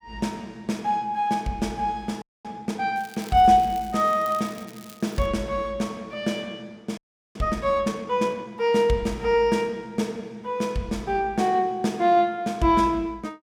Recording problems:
frozen audio; at 2 s and at 7 s
crackling; from 3 to 5.5 s; loose cable, SNR 22 dB

